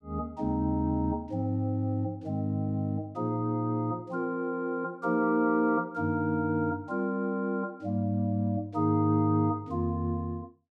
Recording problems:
none

